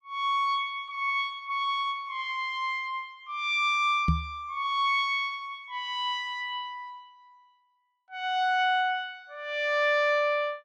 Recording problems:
microphone bump; at 4 s; peak +6 dB vs average level

